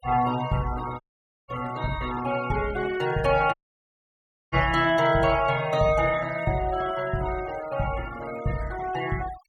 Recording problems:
denoising artefacts; signal-to-artefact ratio 17 dB
dropout; at 1 s and at 3.5 s for 1 s

